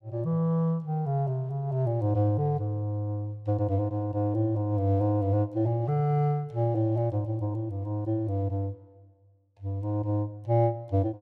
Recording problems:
none

